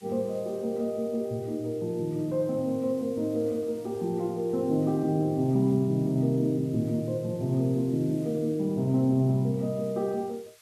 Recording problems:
background hiss; slope +3 dB per octave, SNR 27 dB

